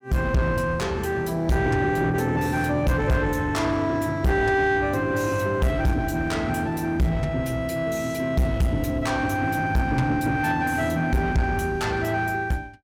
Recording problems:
distorted audio; soft clipping, signal-to-distortion ratio 6 dB

